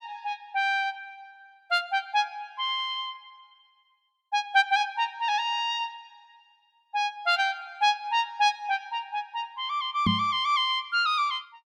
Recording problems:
microphone thump; at 10 s; peak +4 dB vs average level

